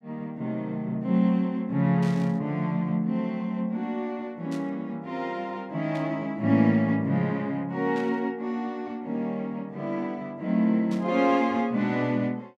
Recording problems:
burst of static; 5 times, first at 2 s; peak -13 dB vs average level

